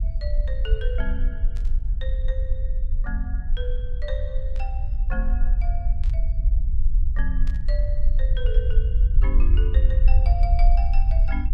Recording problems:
low-frequency rumble; below 52 Hz, SNR -13 dB
static burst; 4 times, first at 1.5 s; peak -6 dB vs average level

